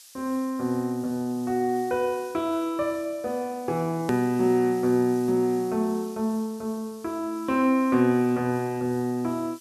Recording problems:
background hiss; slope +5 dB per octave, SNR 22 dB
edit click; at 4 s

